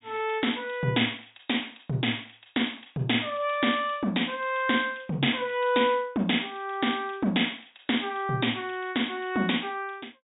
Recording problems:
treble cut off; nothing above 4 kHz

